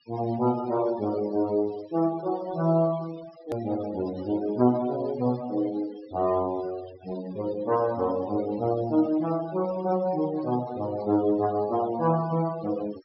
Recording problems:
low-pass filter; nothing above 5.5 kHz
denoising artefacts; signal-to-artefact ratio 18 dB
hard cut with a click; at 3.5 s

